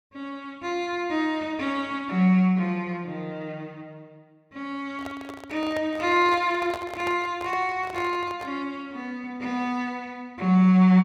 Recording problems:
handling noise; from 5 to 8.5 s; peak -5 dB vs average level

